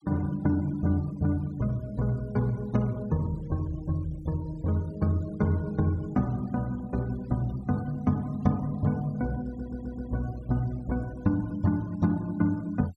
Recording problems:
denoising artefacts; signal-to-artefact ratio 25 dB
stutter; at 9.5 s

